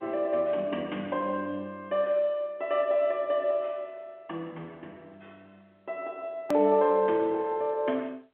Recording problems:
phone line; 220 Hz to 3.6 kHz, G.711
edit click; at 6.5 s

